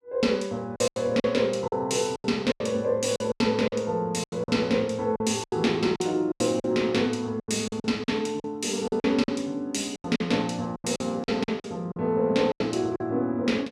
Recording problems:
packet loss; 13% of the sound replaced, filled with silence

